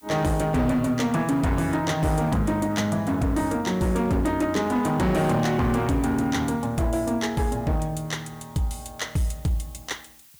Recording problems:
distorted audio; hard clipping, signal-to-distortion ratio 11 dB
hiss; slope +3 dB per octave, SNR 27 dB

